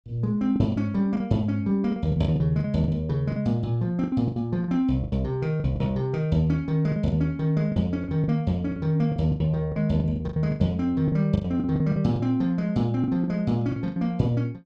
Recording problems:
lost packets; 13% of the sound replaced, filled with the last packet

